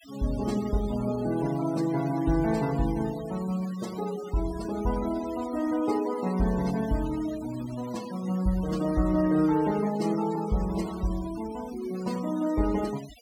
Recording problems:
denoising artefacts; signal-to-artefact ratio 17 dB

